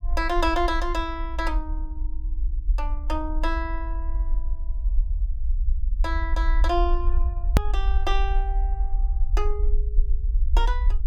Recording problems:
rumble; below 50 Hz, SNR -2 dB
hard cut with a click; at 7.5 s

